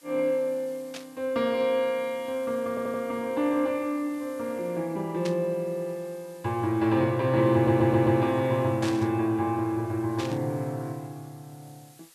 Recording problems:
background hiss; slope +1 dB per octave, SNR 27 dB
static burst; 4 times, first at 1 s; peak -6 dB vs average level
stutter; at 2.5 s and at 7.5 s

